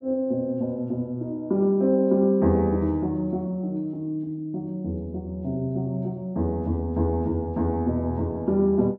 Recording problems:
none

